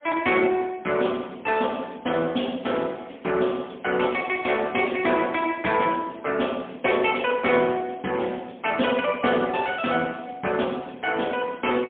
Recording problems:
phone line; 220 Hz to 3.4 kHz, AMR-NB, then MP3

